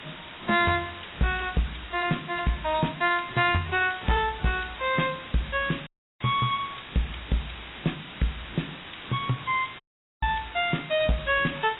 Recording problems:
lossy codec; AAC, log-spectral distance 20 dB, nothing above 3.8 kHz
distortion; hard clipping, uneven, signal-to-distortion ratio 11 dB
background hiss; SNR 14 dB
dropout; at 6 s and at 10 s

